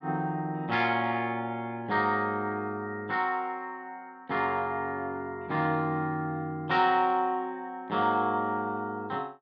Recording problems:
none

